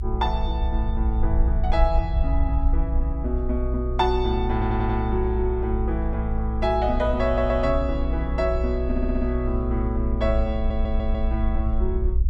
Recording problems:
low-frequency rumble; below 60 Hz, SNR 0 dB
stutter; 4 times, first at 4.5 s

